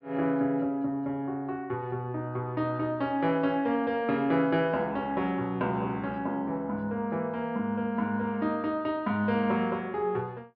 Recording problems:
treble cut off; nothing above 5.2 kHz

